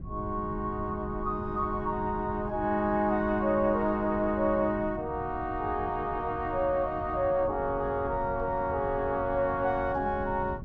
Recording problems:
wind on the microphone; below 160 Hz, SNR 13 dB

